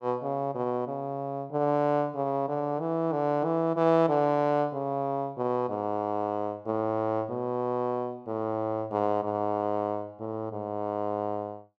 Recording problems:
none

